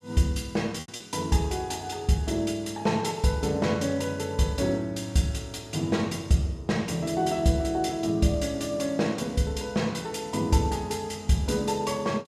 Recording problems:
lost packets; 1% of the sound replaced, filled with repeated pitch periods

